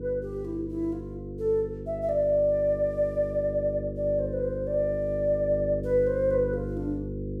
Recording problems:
mains hum; 50 Hz, harmonics up to 500 Hz, SNR 8 dB

